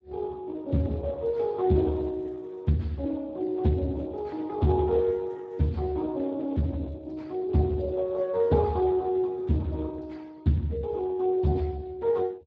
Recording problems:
lossy codec; Speex, log-spectral distance 2 dB

